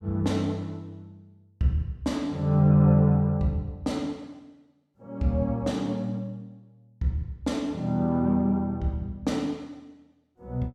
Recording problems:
none

